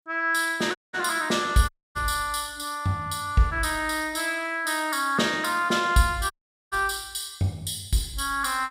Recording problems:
dropout; at 1 s, at 1.5 s and at 6.5 s

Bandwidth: 15.5 kHz